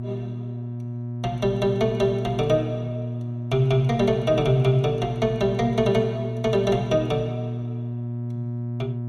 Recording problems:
mains hum; 60 Hz, harmonics up to 600 Hz, SNR 7 dB

